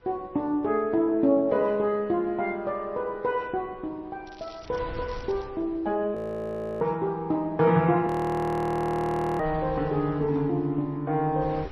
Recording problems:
lossy compression; MP3, then MP3, log-spectral distance 2 dB, nothing above 13.1 kHz
wind noise; below 330 Hz, SNR 19 dB
crackle; from 4.5 to 5.5 s; loose cable, SNR 26 dB
audio freezing; at 6 s for 0.5 s and at 8 s for 1.5 s

